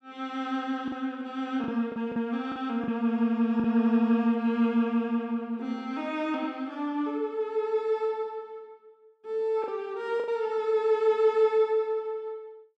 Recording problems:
packet loss; 3% of the sound replaced, filled with the last packet

